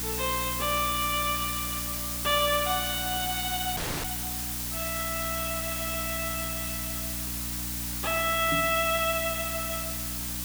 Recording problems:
electrical hum; 60 Hz, harmonics up to 300 Hz, SNR 11 dB
hiss; slope +1 dB per octave, SNR 1 dB
audio cutting out; at 4 s
microphone thump; at 8.5 s; peak -1 dB vs average level

